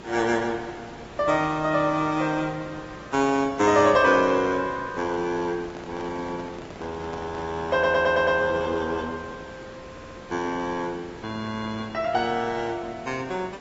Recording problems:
treble missing; nothing above 7.6 kHz
lossy compression; AAC, log-spectral distance 3 dB
hiss; slope -6 dB per octave, SNR 17 dB
microphone handling noise; from 5.5 to 7.5 s; peak -10 dB vs average level
stutter; at 7.5 s and at 10 s

